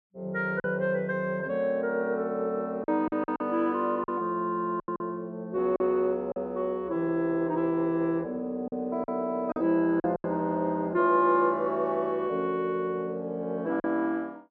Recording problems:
packet loss; 5% of the sound replaced, filled with silence

